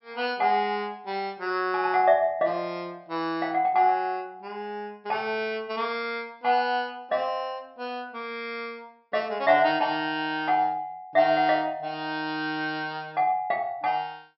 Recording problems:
treble missing; nothing above 5.5 kHz

